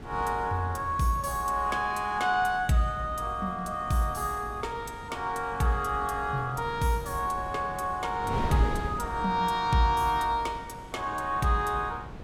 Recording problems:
wind noise; below 460 Hz, SNR 13 dB

